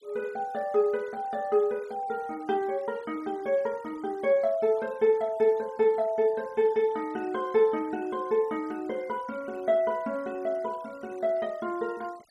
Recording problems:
noise reduction artefacts; signal-to-artefact ratio 27 dB

